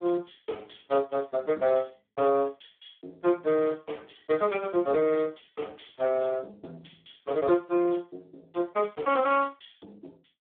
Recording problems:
telephone audio; 220 Hz to 2.9 kHz, Speex

